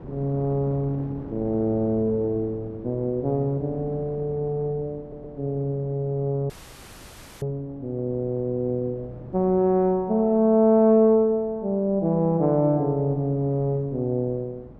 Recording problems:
wind on the microphone; below 380 Hz, SNR 20 dB
stutter; at 5 s
audio cutting out; at 6.5 s for 1 s

